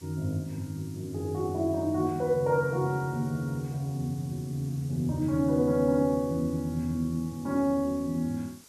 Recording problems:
background hiss; SNR 23 dB

